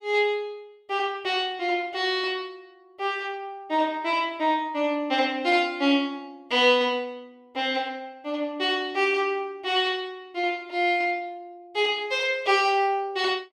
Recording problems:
none

